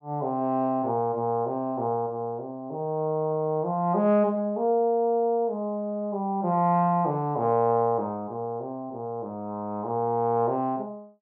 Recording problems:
none

